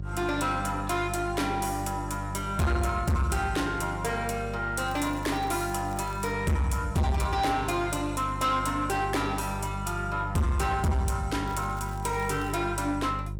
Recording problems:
distorted audio; soft clipping, signal-to-distortion ratio 8 dB
hum; 50 Hz, harmonics up to 400 Hz, SNR 8 dB
crackle; from 5 to 6.5 s and from 11 to 13 s; loose cable, SNR 23 dB

